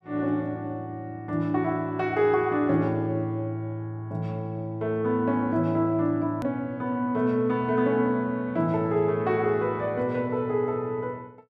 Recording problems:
edit click; at 6.5 s

